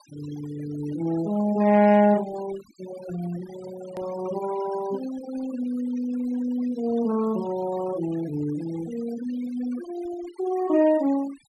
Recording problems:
denoising artefacts; signal-to-artefact ratio 17 dB
click at an edit; at 4 s

